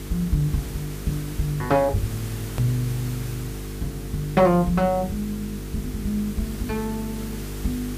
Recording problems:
electrical hum; 50 Hz, harmonics up to 450 Hz, SNR 9 dB
hiss; slope -2 dB per octave, SNR 14 dB
click at an edit; at 2.5 s

